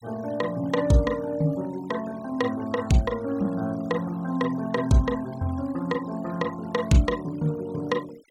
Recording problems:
denoising artefacts; signal-to-artefact ratio 21 dB

